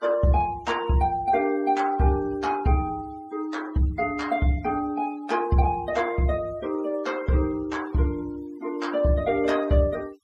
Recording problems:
denoising artefacts; signal-to-artefact ratio 23 dB

